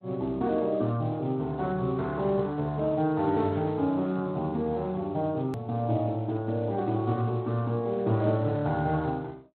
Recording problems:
codec artefacts; Speex, log-spectral distance 2 dB, nothing above 13.1 kHz
hard cut with a click; at 5.5 s

